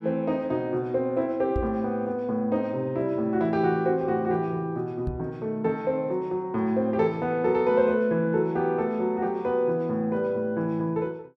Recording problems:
microphone bump; at 1.5 s and at 5 s; peak -1 dB vs average level

